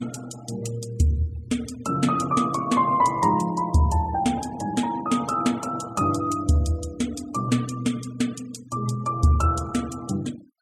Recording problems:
denoising artefacts; signal-to-artefact ratio 21 dB

